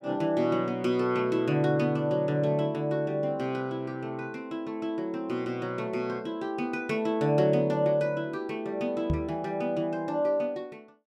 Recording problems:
knock on the microphone; at 9 s; peak +4 dB vs average level

